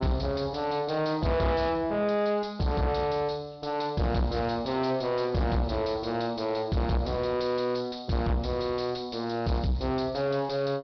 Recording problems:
treble cut off; nothing above 5.5 kHz
distortion; soft clipping, signal-to-distortion ratio 5 dB

